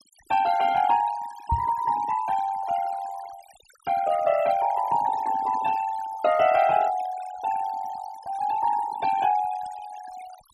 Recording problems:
noise reduction artefacts; signal-to-artefact ratio 15 dB
knock on the microphone; at 1.5 s; peak +1 dB vs average level

